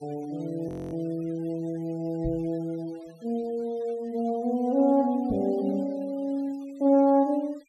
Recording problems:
denoising artefacts; signal-to-artefact ratio 28 dB
frozen audio; at 0.5 s
microphone thump; at 2.5 s and at 5.5 s; peak -2 dB vs average level

